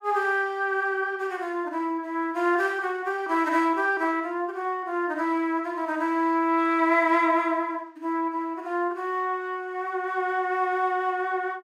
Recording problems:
none

